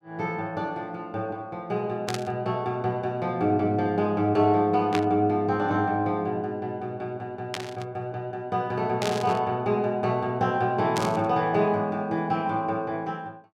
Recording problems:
static burst; 5 times, first at 2 s; peak 0 dB vs average level

